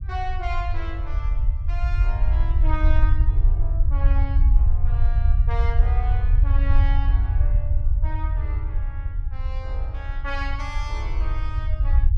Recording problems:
rumble; below 66 Hz, SNR -12 dB

